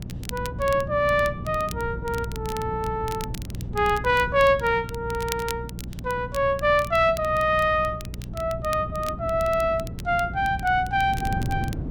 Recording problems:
mains hum; 60 Hz, harmonics up to 420 Hz, SNR 14 dB
wind on the microphone; below 210 Hz, SNR 12 dB
crackle; vinyl, SNR 18 dB

